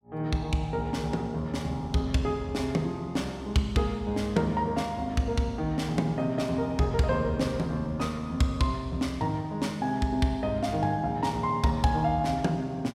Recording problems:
none

